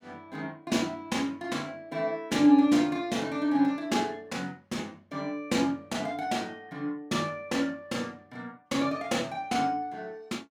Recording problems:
none

